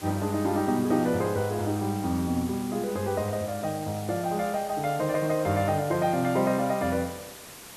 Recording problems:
background hiss; slope -2 dB per octave, SNR 15 dB

